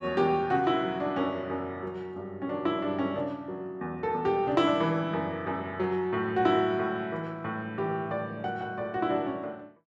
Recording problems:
none

